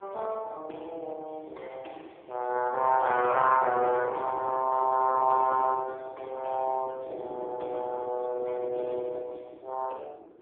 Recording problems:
telephone audio; 280 Hz to 3.5 kHz, AMR-NB
wind on the microphone; below 480 Hz, SNR 18 dB

